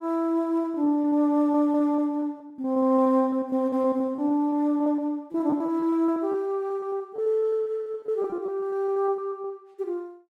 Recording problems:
lost packets; 14% of the sound replaced, filled with repeated pitch periods

